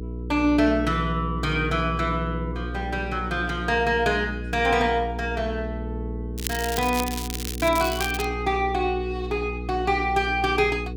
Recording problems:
electrical hum; 60 Hz, harmonics up to 480 Hz, SNR 8 dB
crackle; from 6.5 to 8.5 s; loose cable, SNR 8 dB

